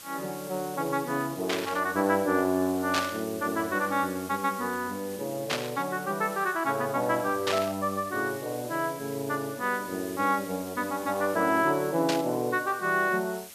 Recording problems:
hiss; slope +1 dB per octave, SNR 15 dB
static burst; 5 times, first at 1.5 s; peak +3 dB vs average level

